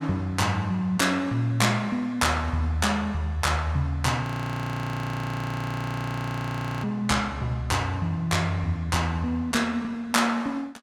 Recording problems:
frozen audio; at 4 s for 2.5 s

